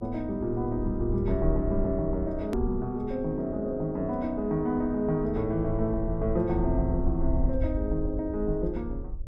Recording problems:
electrical hum; 50 Hz, harmonics up to 600 Hz, SNR 23 dB
rumble; below 66 Hz, SNR 6 dB
hard cut with a click; at 2.5 s

